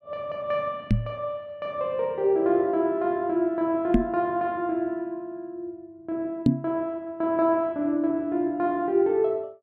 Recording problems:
knock on the microphone; at 1 s, at 4 s and at 6.5 s; peak +10 dB vs average level

